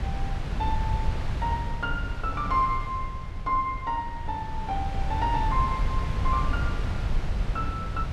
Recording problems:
wind on the microphone; below 100 Hz, SNR 1 dB

